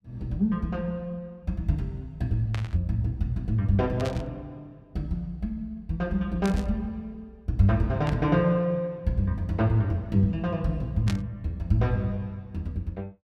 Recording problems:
burst of static; 5 times, first at 2.5 s; peak -5 dB vs average level

